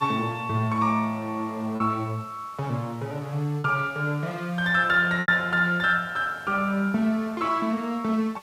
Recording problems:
background hiss; slope -1 dB per octave, SNR 27 dB
lost packets; 1.9% of the sound replaced, filled with repeated pitch periods

